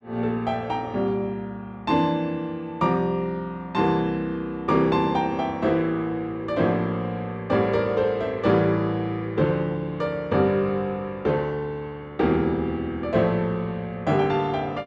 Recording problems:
none

